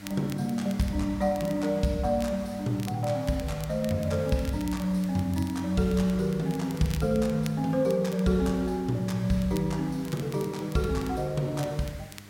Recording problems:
hum; 50 Hz, harmonics up to 400 Hz, SNR 23 dB
hiss; SNR 22 dB
crackle; vinyl, SNR 20 dB

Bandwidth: 16.5 kHz